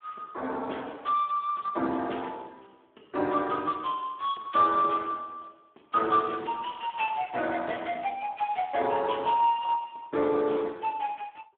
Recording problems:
phone line; 260 Hz to 2.9 kHz, Speex

